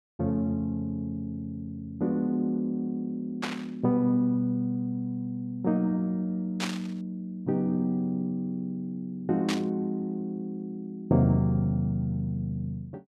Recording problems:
static burst; at 3.5 s, at 6.5 s and at 9.5 s; peak +2 dB vs average level

